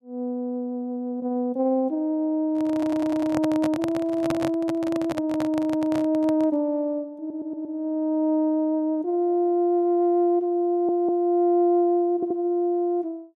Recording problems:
handling noise; from 2.5 to 6.5 s; peak -2 dB vs average level
stutter; 4 times, first at 2.5 s

